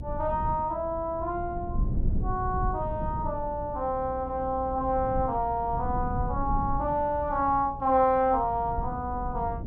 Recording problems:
electrical hum; 60 Hz, harmonics up to 720 Hz, SNR 17 dB
wind noise; below 120 Hz, SNR 8 dB

